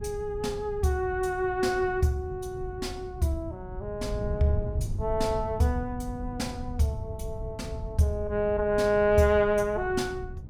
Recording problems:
wind noise; below 120 Hz, SNR 10 dB

